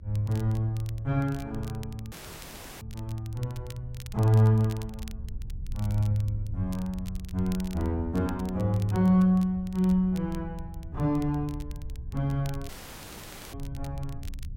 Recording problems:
rumble; below 80 Hz, SNR 14 dB
crackling; vinyl, SNR 24 dB
dropout; at 2 s for 0.5 s and at 13 s for 1 s

